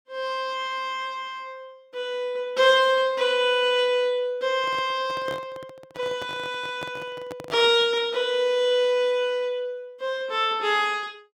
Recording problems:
microphone handling noise; from 4.5 to 8 s; peak -8 dB vs average level

